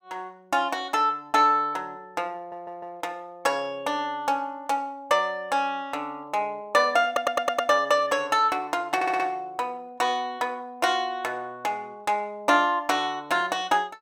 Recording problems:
audio stuttering; at 2.5 s, at 7 s and at 9 s

